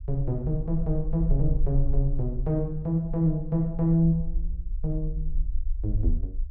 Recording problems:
rumble; below 46 Hz, SNR 6 dB

